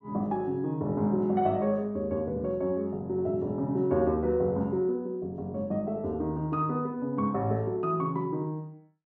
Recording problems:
none

